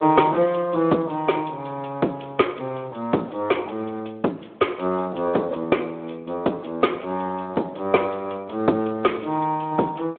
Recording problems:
telephone audio; 220 Hz to 3.6 kHz, Speex

